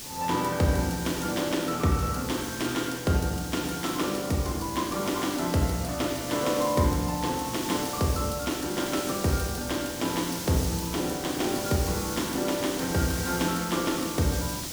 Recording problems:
hiss; SNR 7 dB

